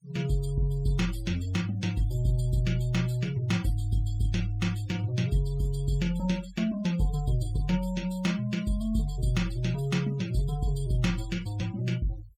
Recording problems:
noise reduction artefacts; signal-to-artefact ratio 18 dB

